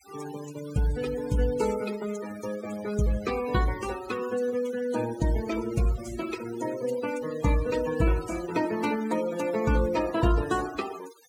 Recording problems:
noise reduction artefacts; signal-to-artefact ratio 14 dB

